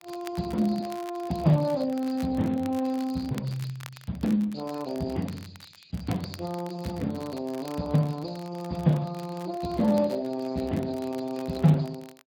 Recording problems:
lossy codec; MP3, then Speex, log-spectral distance 8 dB
crackle; vinyl, SNR 21 dB

